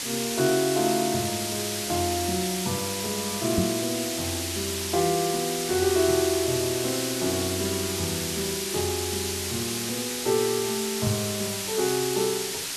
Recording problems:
background hiss; SNR 1 dB
crackle; from 1.5 to 4 s and from 7.5 to 10 s; loose cable, SNR 30 dB
knock on the microphone; at 3.5 s and at 11 s; peak +6 dB vs average level

